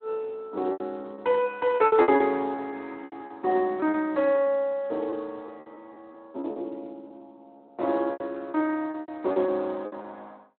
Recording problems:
phone line; 260 Hz to 3.4 kHz, Speex
lost packets; 14% of the sound replaced, filled with repeated pitch periods

